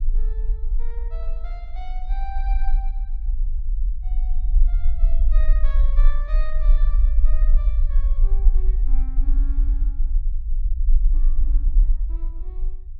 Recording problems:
rumble; below 40 Hz, strongest tone 26 Hz, SNR -20 dB

